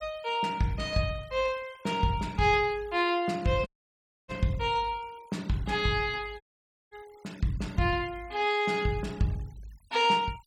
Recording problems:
denoising artefacts; signal-to-artefact ratio 25 dB
audio cutting out; at 3.5 s for 0.5 s and at 6.5 s for 0.5 s

